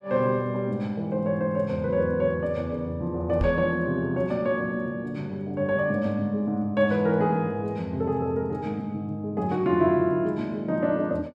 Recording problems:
microphone thump; at 3.5 s; peak +4 dB vs average level

